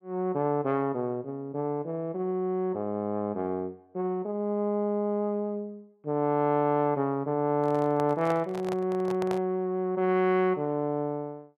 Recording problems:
handling noise; from 7.5 to 9.5 s; peak -4 dB vs average level

